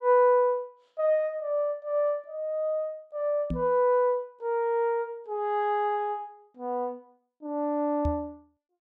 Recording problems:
knock on the microphone; at 3.5 s and at 8 s; peak 0 dB vs average level

